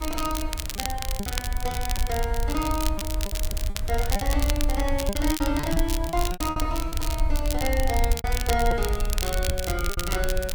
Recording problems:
hiss; slope -6 dB per octave, SNR 16 dB
rumble; below 64 Hz, SNR 0 dB
crackle; vinyl, SNR 4 dB
packet loss; 10% of the sound replaced, filled with repeated pitch periods

